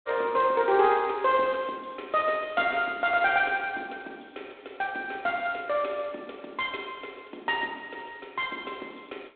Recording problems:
phone line; 260 Hz to 3.9 kHz, G.726

